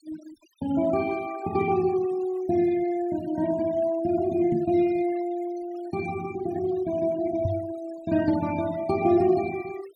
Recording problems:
denoising artefacts; signal-to-artefact ratio 20 dB
microphone thump; at 4.5 s and at 7.5 s; peak +1 dB vs average level

